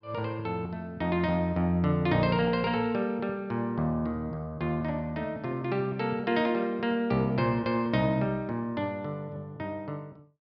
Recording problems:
treble missing; nothing above 5.5 kHz

